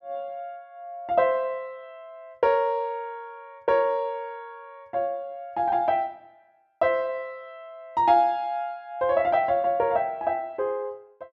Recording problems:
none

